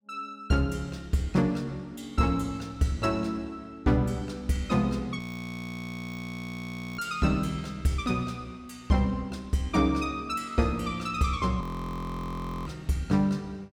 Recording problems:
frozen audio; at 5 s for 2 s and at 12 s for 1 s

